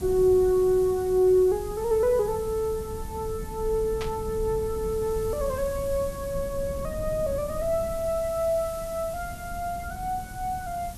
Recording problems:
background hiss; slope -1 dB per octave, SNR 19 dB
low-frequency rumble; below 150 Hz, SNR 13 dB
static burst; at 4 s; peak -6 dB vs average level

